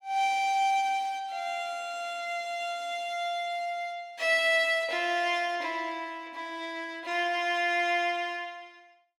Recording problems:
none

